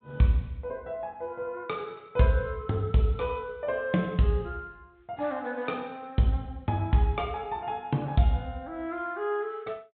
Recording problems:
treble missing; nothing above 4 kHz

